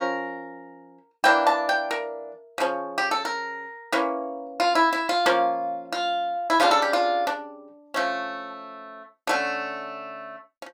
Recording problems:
none

